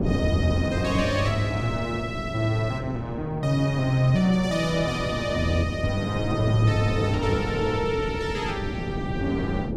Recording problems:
wind noise; below 330 Hz, SNR 6 dB

